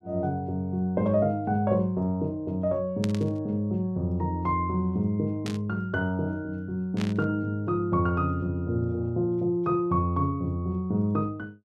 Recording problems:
burst of static; at 3 s, at 5.5 s and at 7 s; peak -4 dB vs average level

